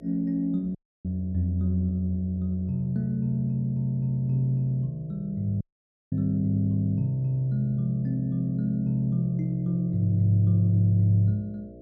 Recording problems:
mains hum; 60 Hz, harmonics up to 660 Hz, SNR 22 dB
dropout; at 1 s and at 5.5 s for 0.5 s

